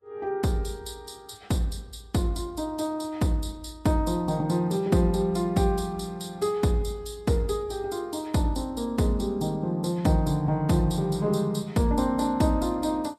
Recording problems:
lossy compression; Vorbis, log-spectral distance 2 dB, nothing above 13.8 kHz

